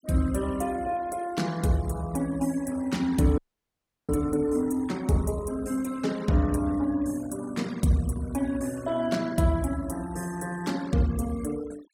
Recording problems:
noise reduction artefacts; signal-to-artefact ratio 20 dB
frozen audio; at 3.5 s for 0.5 s

